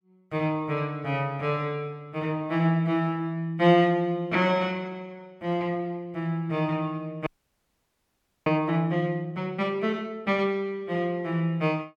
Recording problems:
frozen audio; at 7.5 s for 1 s

